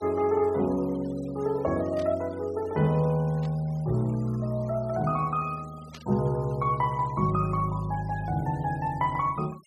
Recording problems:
noise reduction artefacts; signal-to-artefact ratio 24 dB
burst of static; at 2 s, at 3.5 s and at 6 s; peak -14 dB vs average level

